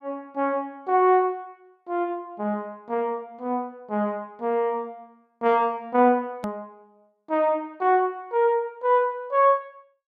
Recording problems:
edit click; at 6.5 s

